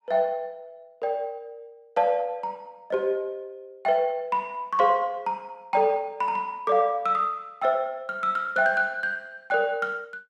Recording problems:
none

